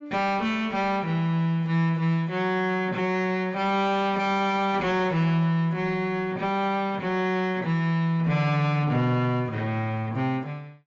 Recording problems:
codec artefacts; AAC, log-spectral distance 2 dB
distortion; soft clipping, signal-to-distortion ratio 10 dB

